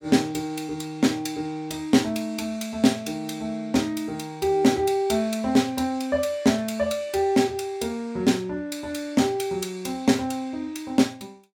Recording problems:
none

